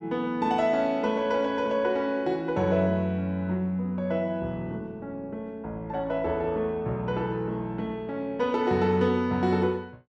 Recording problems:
none

